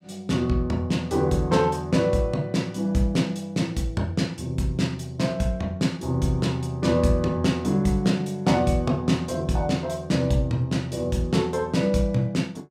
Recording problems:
none

